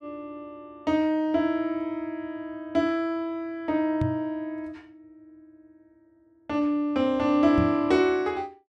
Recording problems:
microphone thump; at 4 s and at 7.5 s; peak +2 dB vs average level

